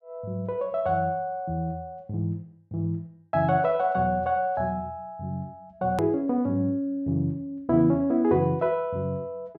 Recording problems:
edit click; at 6 s

